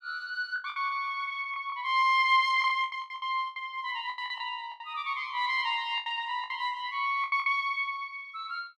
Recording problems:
lost packets; 12% of the sound replaced, filled with the last packet

